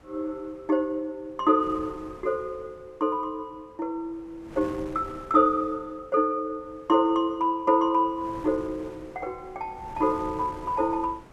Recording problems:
wind on the microphone; below 810 Hz, SNR 20 dB

